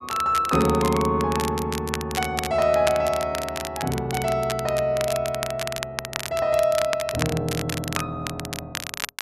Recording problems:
crackling; vinyl, SNR 8 dB

